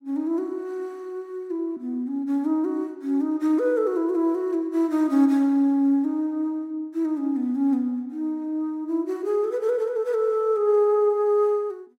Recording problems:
none

